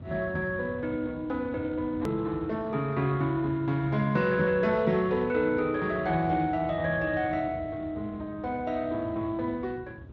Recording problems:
lossy codec; Speex, log-spectral distance 3 dB, nothing above 13.1 kHz
low-frequency rumble; below 210 Hz, SNR 15 dB
click at an edit; at 2 s

